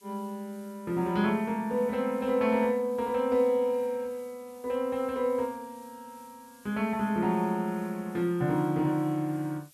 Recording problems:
background hiss; SNR 27 dB

